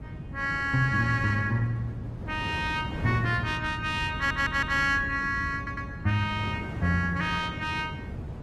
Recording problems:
codec artefacts; Opus, log-spectral distance 2 dB, nothing above 14.3 kHz
low-frequency rumble; below 180 Hz, SNR 12 dB
wind on the microphone; below 400 Hz, SNR 13 dB
audio stuttering; at 4 s and at 5.5 s

